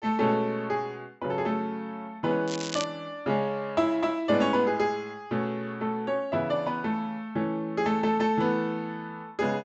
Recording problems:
treble cut off; nothing above 7.7 kHz
crackling; at 2.5 s; loose cable, SNR 9 dB

